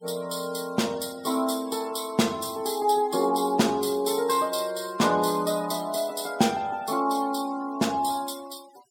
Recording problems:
noise reduction artefacts; signal-to-artefact ratio 20 dB

